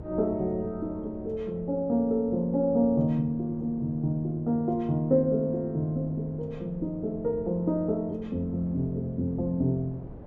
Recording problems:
wind on the microphone; below 310 Hz, SNR 19 dB

